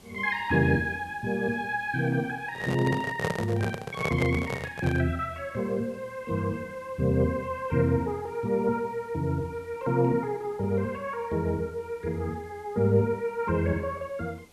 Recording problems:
hiss; SNR 27 dB
microphone handling noise; from 2.5 to 5 s; peak +3 dB vs average level

